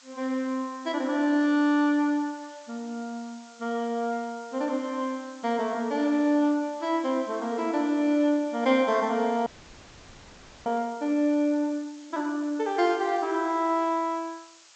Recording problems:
treble cut off; nothing above 8 kHz
hiss; SNR 24 dB
audio freezing; at 9.5 s for 1 s

